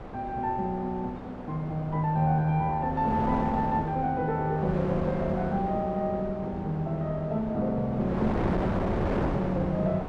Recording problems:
wind noise; below 740 Hz, SNR 6 dB

